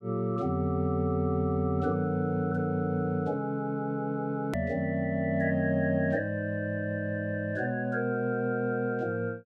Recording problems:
click at an edit; at 4.5 s

